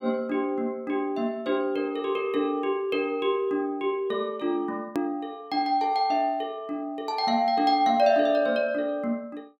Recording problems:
hard cut with a click; at 5 s

